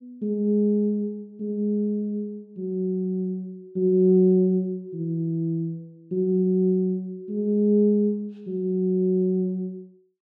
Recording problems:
none

